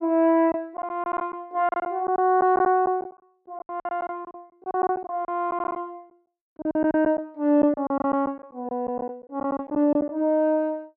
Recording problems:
lost packets; 13% of the sound replaced, filled with silence

